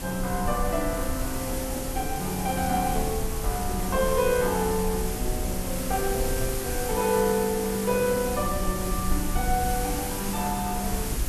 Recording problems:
hiss; SNR 5 dB
low-frequency rumble; below 68 Hz, SNR 8 dB

